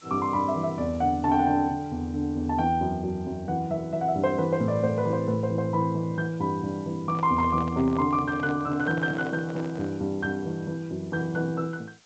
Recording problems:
lossy compression; G.722, log-spectral distance 3 dB
hiss; slope 0 dB per octave, SNR 28 dB
handling noise; from 7 to 10 s; peak -8 dB vs average level

